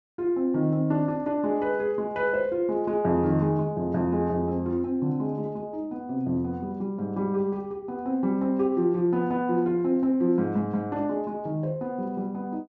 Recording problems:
treble missing; nothing above 8 kHz

